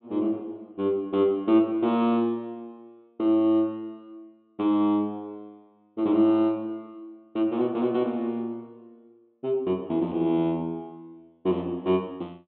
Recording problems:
treble missing; nothing above 4 kHz

